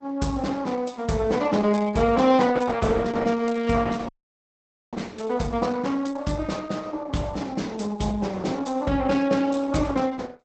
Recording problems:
lossy compression; Opus, log-spectral distance 4 dB, nothing above 8.2 kHz
dropout; at 4 s for 1 s

